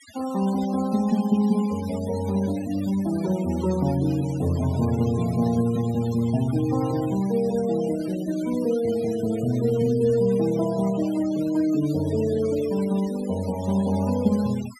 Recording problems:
denoising artefacts; signal-to-artefact ratio 18 dB

